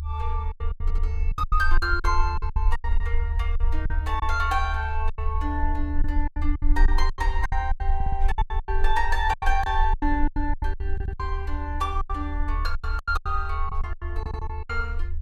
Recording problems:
low-frequency rumble; below 52 Hz, strongest tone 20 Hz, SNR -1 dB
packet loss; 17% of the sound replaced, filled with silence
stutter; 4 times, first at 1 s

